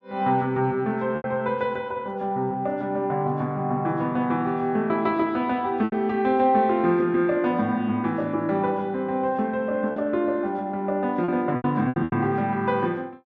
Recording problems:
lost packets; 4% of the sound replaced, filled with repeated pitch periods

